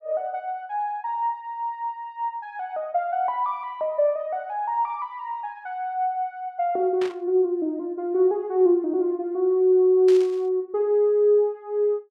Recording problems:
static burst; at 7 s and at 10 s; peak -9 dB vs average level

